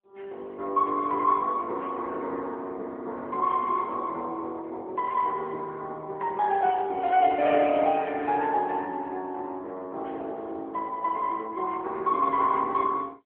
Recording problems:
phone line; 300 Hz to 3.4 kHz, AMR-NB

